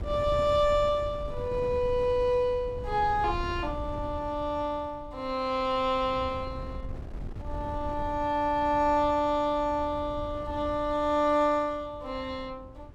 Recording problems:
wind on the microphone; below 120 Hz, SNR 13 dB

